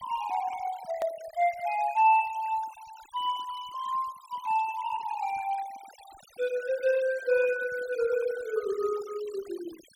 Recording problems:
denoising artefacts; signal-to-artefact ratio 19 dB
hard cut with a click; at 1 s

